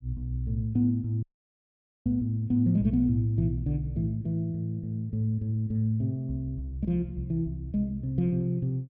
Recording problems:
audio cutting out; at 1 s for 1 s

